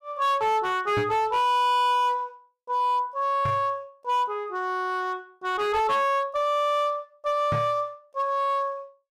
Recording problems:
distortion; hard clipping, signal-to-distortion ratio 11 dB
knock on the microphone; at 1 s, at 3.5 s and at 7.5 s; peak -1 dB vs average level

